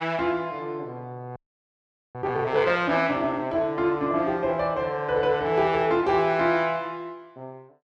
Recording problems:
audio freezing; at 1.5 s for 1 s

